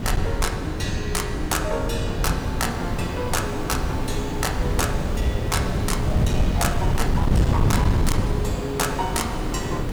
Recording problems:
distortion; hard clipping, signal-to-distortion ratio 11 dB
hiss; slope -7 dB per octave, SNR 8 dB
wind noise; below 160 Hz, SNR -2 dB

